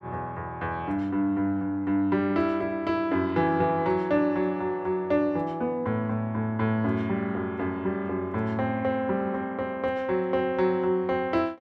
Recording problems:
none

